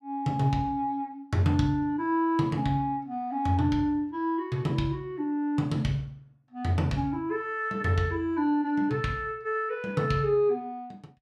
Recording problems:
none

